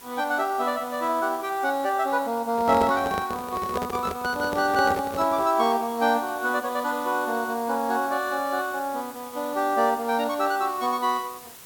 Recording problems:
background hiss; slope -1 dB per octave, SNR 18 dB
microphone handling noise; from 2.5 to 5.5 s; peak -1 dB vs average level

